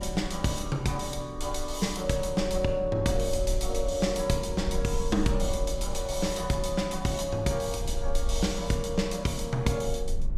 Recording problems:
low-frequency rumble; below 52 Hz, SNR 8 dB

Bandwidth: 15.5 kHz